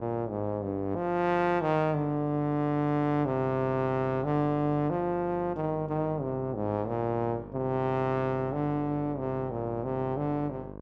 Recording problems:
electrical hum; 50 Hz, harmonics up to 1.2 kHz, SNR 15 dB

